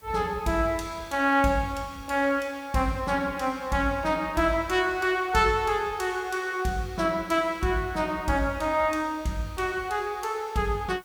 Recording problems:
hiss; slope -2 dB per octave, SNR 29 dB

